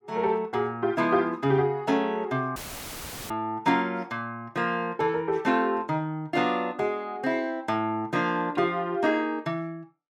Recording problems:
audio cutting out; at 2.5 s for 0.5 s; filled with static

